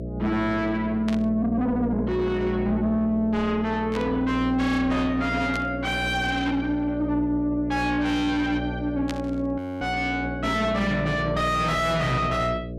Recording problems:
distorted audio; soft clipping, signal-to-distortion ratio 6 dB
hum; 60 Hz, harmonics up to 660 Hz, SNR 8 dB
burst of static; 4 times, first at 1 s; peak -5 dB vs average level
audio freezing; at 9.5 s

